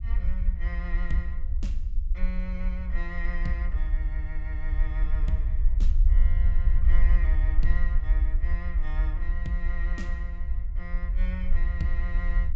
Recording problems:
low-pass filter; nothing above 8 kHz
rumble; below 50 Hz, SNR -11 dB

